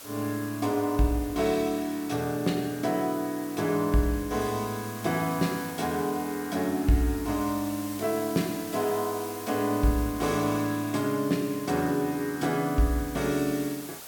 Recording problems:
background hiss; slope -1 dB per octave, SNR 14 dB

